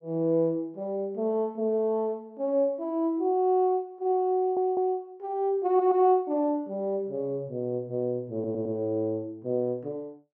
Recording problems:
stutter; at 4.5 s, at 5.5 s and at 8.5 s

